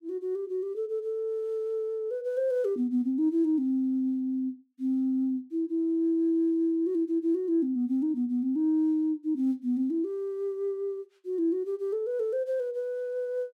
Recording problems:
none

